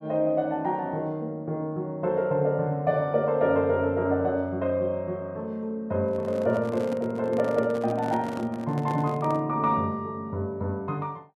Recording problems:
handling noise; from 6 to 9.5 s; peak -5 dB vs average level

